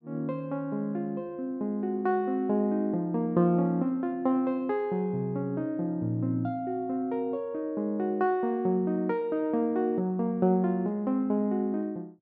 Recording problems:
none

